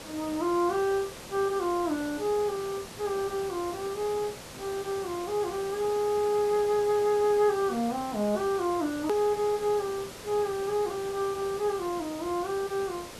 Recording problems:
hiss; slope -3 dB per octave, SNR 13 dB
hard cut with a click; at 9 s

